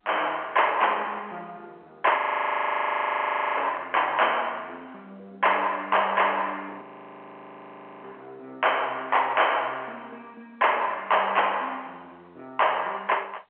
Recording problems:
phone line; 300 Hz to 3.2 kHz, G.711
distorted audio; soft clipping, signal-to-distortion ratio 14 dB
frozen audio; at 2 s for 1.5 s and at 7 s for 1 s

